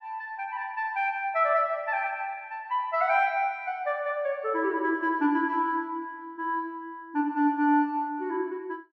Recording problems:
none

